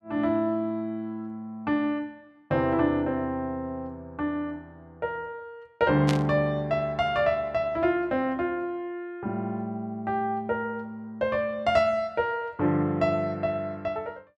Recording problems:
static burst; at 6 s; peak 0 dB vs average level

